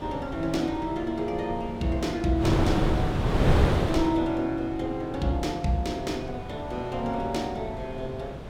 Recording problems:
wind noise; below 470 Hz, SNR 1 dB

